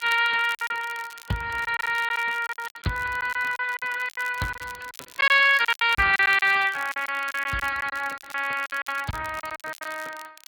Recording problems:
lossy compression; MP3, then Speex, log-spectral distance 5 dB
crackling; vinyl, SNR 21 dB
lost packets; 14% of the sound replaced, filled with silence

